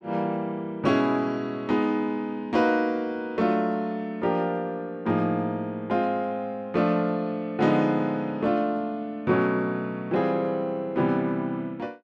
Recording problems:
none

